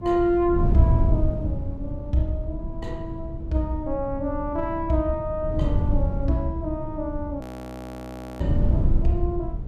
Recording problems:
wind on the microphone; below 110 Hz, SNR 0 dB
audio freezing; at 7.5 s for 1 s

